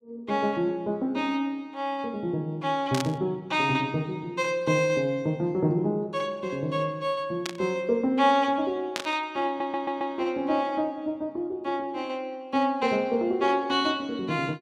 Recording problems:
burst of static; at 3 s, at 7.5 s and at 9 s; peak +1 dB vs average level
audio stuttering; at 9.5 s

